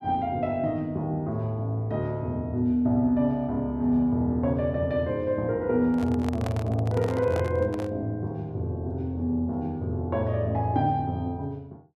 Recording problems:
microphone handling noise; from 6 to 8 s; peak -4 dB vs average level

